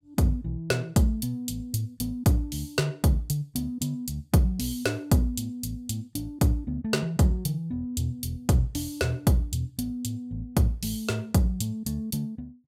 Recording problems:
none

